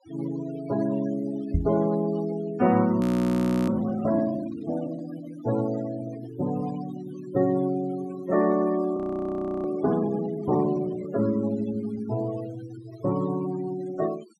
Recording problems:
denoising artefacts; signal-to-artefact ratio 14 dB
knock on the microphone; at 1.5 s; peak +6 dB vs average level
audio freezing; at 3 s for 0.5 s and at 9 s for 0.5 s

